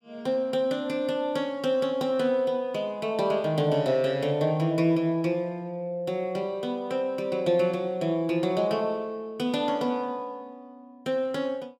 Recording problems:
none

